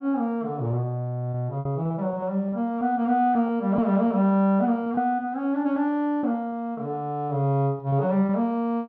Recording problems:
lost packets; 7% of the sound replaced, filled with repeated pitch periods

